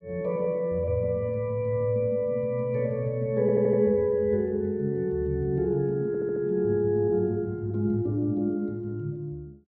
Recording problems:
stutter; at 3.5 s and at 6 s

